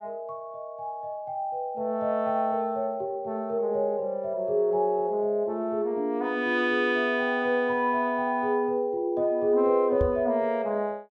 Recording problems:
knock on the microphone; at 10 s; peak 0 dB vs average level

